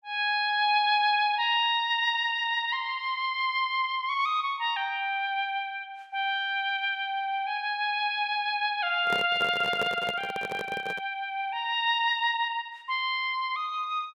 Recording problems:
handling noise; from 9 to 11 s; peak -2 dB vs average level

